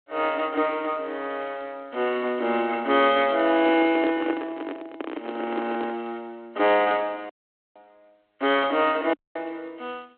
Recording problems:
telephone audio; 260 Hz to 3.3 kHz, G.726
microphone handling noise; from 3.5 to 6 s; peak 0 dB vs average level
audio cutting out; at 7.5 s and at 9 s

